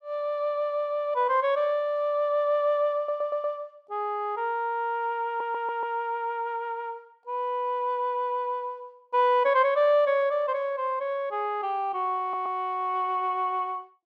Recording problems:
audio stuttering; at 3 s, at 5.5 s and at 12 s

